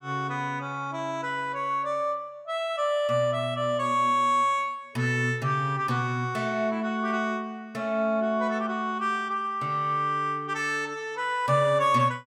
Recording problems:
none

